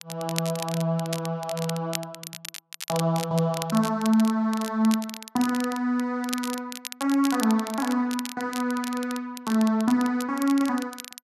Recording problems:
crackling; vinyl, SNR 11 dB

